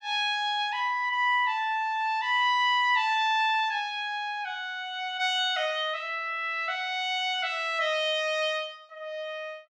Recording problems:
none

